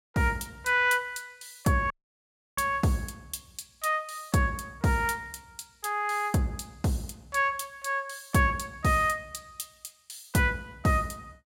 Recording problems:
audio cutting out; at 2 s for 0.5 s

